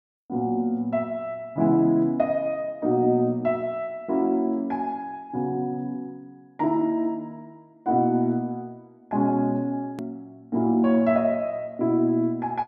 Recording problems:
click at an edit; at 10 s

